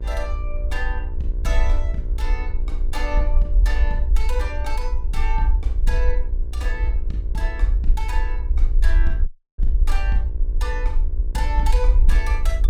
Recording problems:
hum; 60 Hz, harmonics up to 1.1 kHz, SNR 13 dB
low-frequency rumble; below 52 Hz, SNR -8 dB
dropout; at 9.5 s

